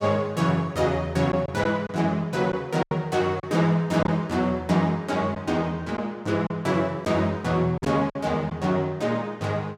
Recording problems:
packet loss; 4% of the sound replaced, filled with silence

